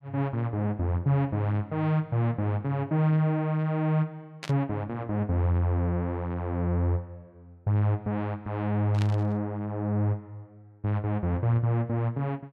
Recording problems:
burst of static; at 4.5 s and at 9 s; peak -6 dB vs average level

